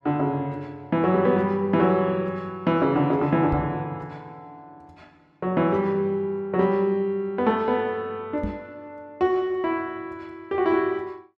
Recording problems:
knock on the microphone; at 3.5 s and at 8.5 s; peak -2 dB vs average level

